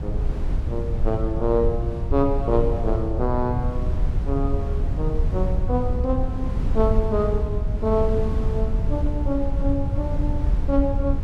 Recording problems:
low-frequency rumble; below 90 Hz, SNR 1 dB
wind on the microphone; below 84 Hz, SNR 5 dB

